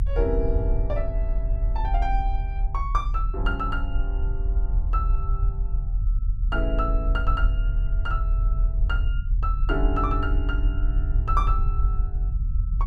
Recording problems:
low-frequency rumble; below 52 Hz, strongest tone 40 Hz, SNR -5 dB

